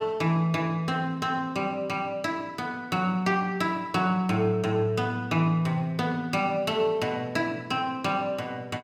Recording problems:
none

